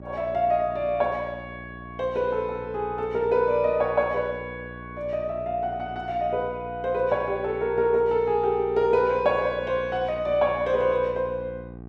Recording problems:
hum; 60 Hz, harmonics up to 1.2 kHz, SNR 16 dB

